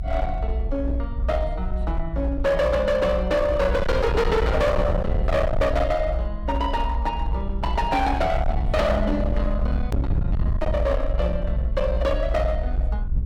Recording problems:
distorted audio; hard clipping, signal-to-distortion ratio 7 dB
low-frequency rumble; below 76 Hz, SNR 2 dB
edit click; at 10 s

